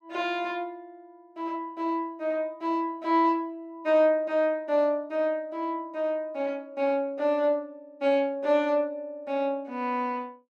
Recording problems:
none

